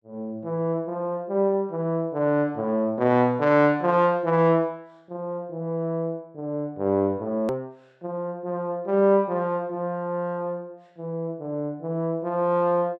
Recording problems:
hard cut with a click; at 7.5 s

